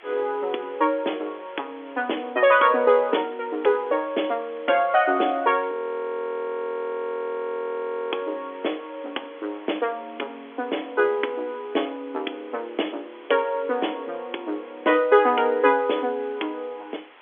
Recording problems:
telephone audio; 260 Hz to 3.5 kHz, G.711
hiss; SNR 24 dB
frozen audio; at 5.5 s for 2.5 s

